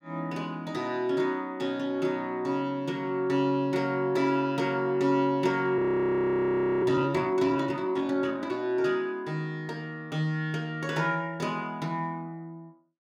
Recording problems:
frozen audio; at 6 s for 1 s

